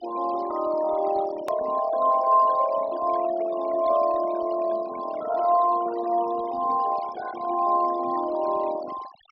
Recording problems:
treble missing; nothing above 5.5 kHz
noise reduction artefacts; signal-to-artefact ratio 17 dB
click at an edit; at 1.5 s

